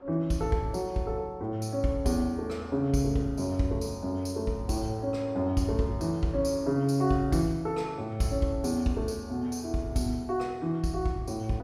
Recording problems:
wind noise; below 890 Hz, SNR 28 dB

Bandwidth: 16.5 kHz